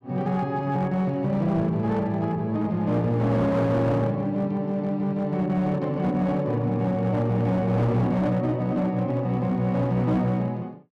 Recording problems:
distorted audio; hard clipping, signal-to-distortion ratio 12 dB

